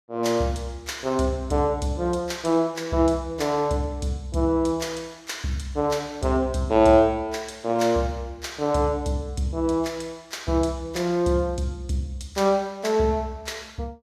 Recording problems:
none

